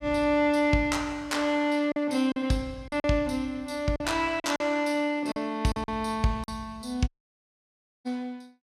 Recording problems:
packet loss; 6% of the sound replaced, filled with silence
audio cutting out; at 7 s for 1 s

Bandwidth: 14.5 kHz